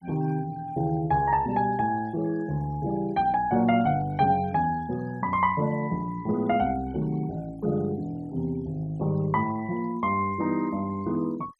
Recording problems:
noise reduction artefacts; signal-to-artefact ratio 25 dB

